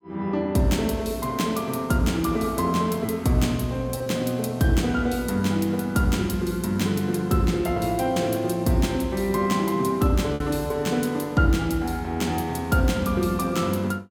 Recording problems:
lost packets; 1.3% of the sound replaced, filled with repeated pitch periods

